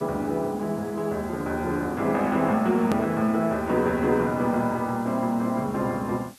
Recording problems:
hiss; slope 0 dB per octave, SNR 25 dB
edit click; at 3 s

